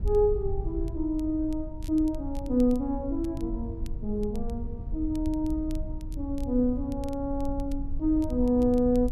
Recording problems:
low-frequency rumble; below 70 Hz, SNR 8 dB
crackle; vinyl, SNR 29 dB

